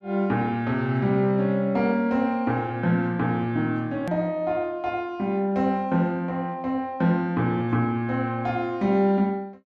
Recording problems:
hard cut with a click; at 4 s

